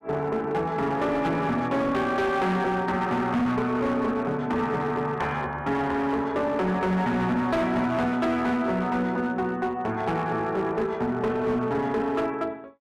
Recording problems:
distortion; hard clipping, uneven, signal-to-distortion ratio 10 dB

